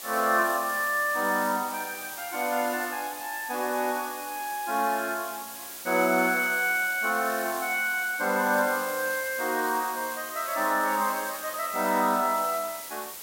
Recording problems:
background hiss; slope 0 dB per octave, SNR 10 dB

